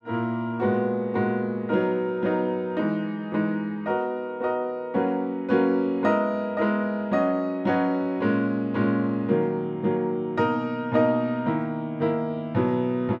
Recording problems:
none

